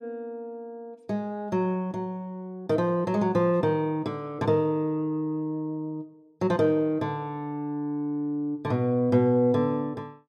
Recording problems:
none

